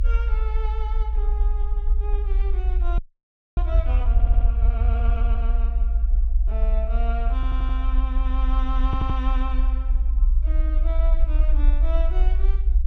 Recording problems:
rumble; below 54 Hz, strongest tone 32 Hz, SNR -12 dB
audio freezing; at 3 s for 0.5 s
stutter; at 4 s, at 7.5 s and at 9 s

